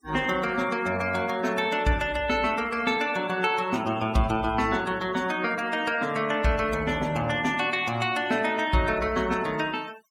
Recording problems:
denoising artefacts; signal-to-artefact ratio 19 dB

